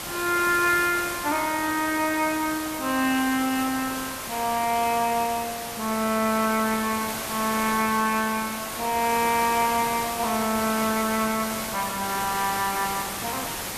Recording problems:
hiss; slope -2 dB per octave, SNR 6 dB

